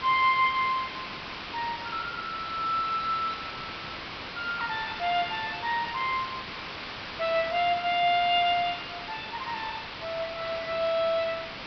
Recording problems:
treble missing; nothing above 5.5 kHz
background hiss; SNR 8 dB

